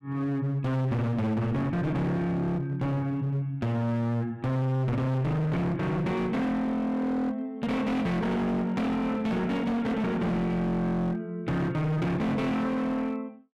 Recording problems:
distorted audio; hard clipping, signal-to-distortion ratio 6 dB

